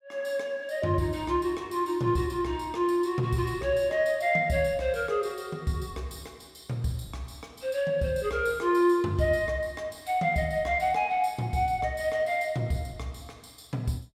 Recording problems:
none

